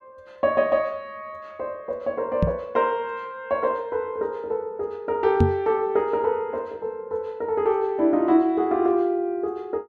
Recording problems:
knock on the microphone; at 2.5 s and at 5.5 s; peak +8 dB vs average level

